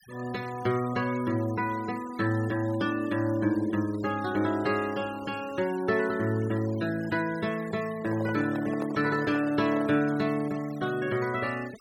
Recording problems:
denoising artefacts; signal-to-artefact ratio 18 dB
microphone handling noise; from 8 to 10 s; peak -5 dB vs average level

